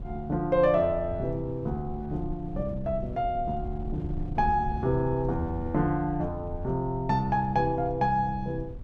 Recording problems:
wind on the microphone; below 110 Hz, SNR 11 dB

